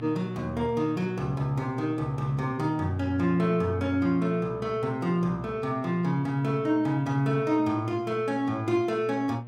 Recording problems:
hum; 60 Hz, harmonics up to 1.3 kHz, SNR 14 dB

